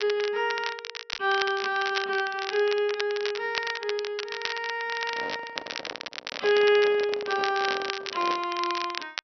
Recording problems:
low-pass filter; nothing above 5.9 kHz
crackle; vinyl, SNR 8 dB
handling noise; from 5 to 8.5 s; peak -7 dB vs average level

